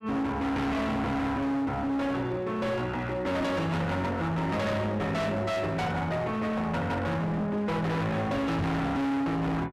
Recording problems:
distortion; hard clipping, uneven, signal-to-distortion ratio 6 dB
microphone bump; at 8.5 s; peak +4 dB vs average level

